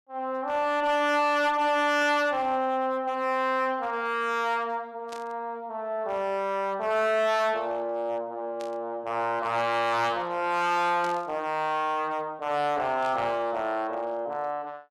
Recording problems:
distortion; hard clipping, uneven, signal-to-distortion ratio 12 dB
burst of static; 5 times, first at 2 s; peak -11 dB vs average level

